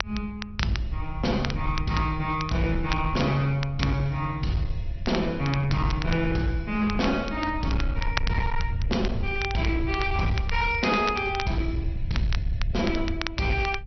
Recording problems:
treble cut off; nothing above 5.8 kHz
lossy compression; Opus, log-spectral distance 2 dB
distortion; hard clipping, signal-to-distortion ratio 11 dB
rumble; below 86 Hz, SNR 6 dB
crackling; vinyl, SNR 11 dB

